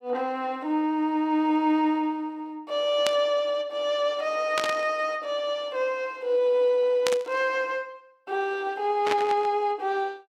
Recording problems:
static burst; 4 times, first at 3 s; peak +3 dB vs average level

